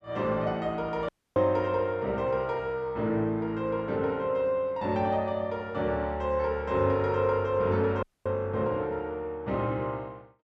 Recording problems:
dropout; at 1 s and at 8 s

